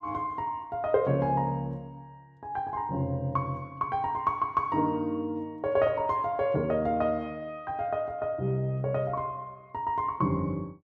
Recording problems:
none

